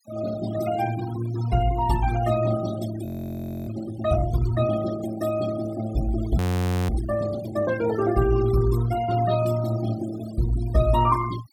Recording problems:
noise reduction artefacts; signal-to-artefact ratio 14 dB
frozen audio; at 3 s for 0.5 s and at 6.5 s for 0.5 s

